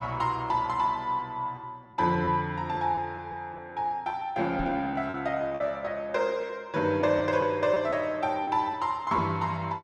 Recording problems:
lost packets; 6% of the sound replaced, filled with repeated pitch periods
knock on the microphone; at 4.5 s; peak -4 dB vs average level

